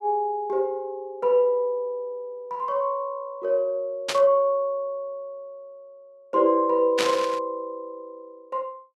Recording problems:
static burst; at 4 s and at 7 s; peak +3 dB vs average level

